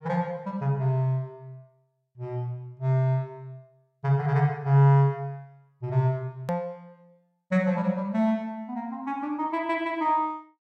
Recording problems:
hard cut with a click; at 6.5 s

